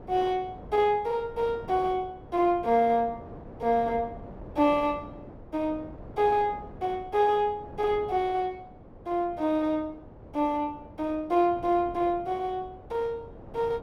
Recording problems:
wind on the microphone; below 530 Hz, SNR 18 dB

